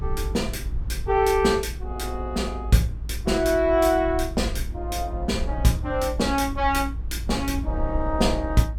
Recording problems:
low-frequency rumble; below 62 Hz, strongest tone 56 Hz, SNR 8 dB

